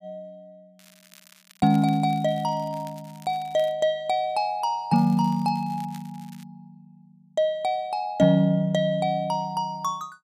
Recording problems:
crackling; from 1 to 3.5 s and from 5 to 6.5 s; loose cable, SNR 27 dB

